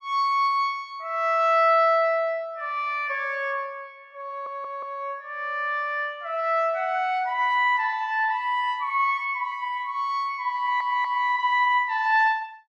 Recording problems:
audio stuttering; at 4.5 s and at 11 s

